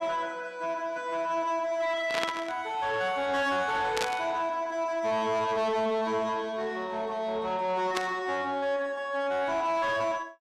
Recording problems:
distortion; soft clipping, signal-to-distortion ratio 11 dB
burst of static; at 2 s, at 4 s and at 8 s; peak +3 dB vs average level

